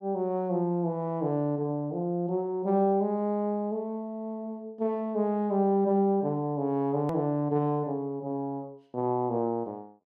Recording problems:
hard cut with a click; at 7 s

